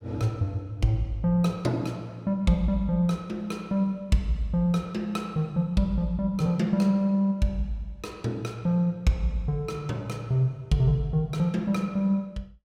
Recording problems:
none

